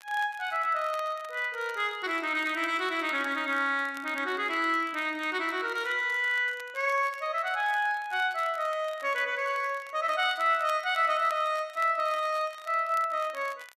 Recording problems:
crackle; vinyl, SNR 23 dB

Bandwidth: 14 kHz